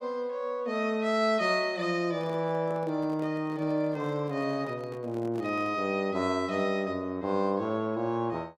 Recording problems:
handling noise; from 2 to 6 s; peak -11 dB vs average level

